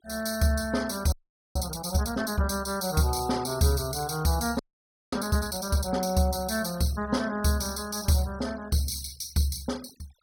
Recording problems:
denoising artefacts; signal-to-artefact ratio 21 dB
frozen audio; at 1 s and at 4.5 s for 0.5 s

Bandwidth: 17 kHz